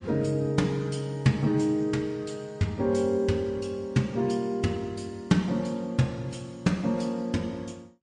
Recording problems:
lossy codec; MP3, log-spectral distance 2 dB, nothing above 9.5 kHz

